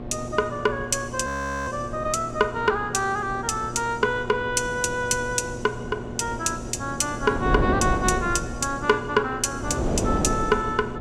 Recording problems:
hum; 60 Hz, harmonics up to 1.4 kHz, SNR 13 dB
wind on the microphone; below 460 Hz, SNR 7 dB
frozen audio; at 1.5 s

